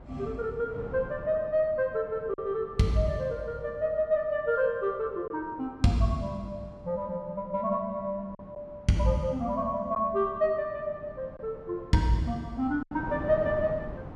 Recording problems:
wind noise; below 490 Hz, SNR 16 dB
packet loss; 1.6% of the sound replaced, filled with silence

